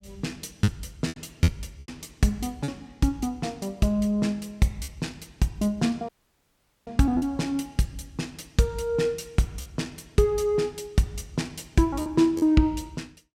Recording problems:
lost packets; 4% of the sound replaced, filled with repeated pitch periods
dropout; at 6 s for 1 s

